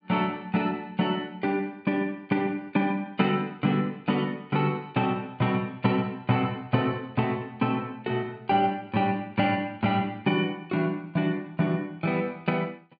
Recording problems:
treble missing; nothing above 4.6 kHz

